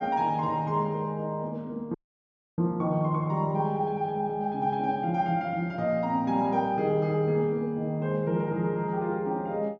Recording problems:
treble cut off; nothing above 7.5 kHz
audio cutting out; at 2 s for 0.5 s

